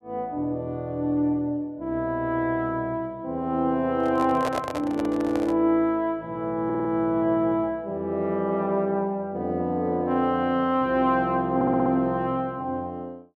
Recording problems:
microphone handling noise; from 4 to 5.5 s; peak +1 dB vs average level
audio stuttering; at 6.5 s and at 12 s

